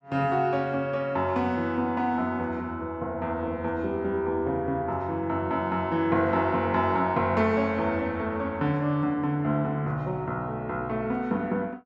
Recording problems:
none

